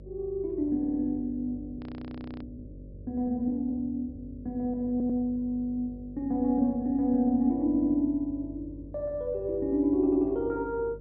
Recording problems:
low-pass filter; nothing above 5.5 kHz
hum; 50 Hz, harmonics up to 600 Hz, SNR 17 dB
audio stuttering; 4 times, first at 1 s
frozen audio; at 2 s for 0.5 s

